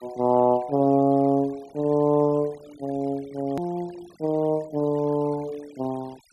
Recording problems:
noise reduction artefacts; signal-to-artefact ratio 27 dB
edit click; at 3.5 s

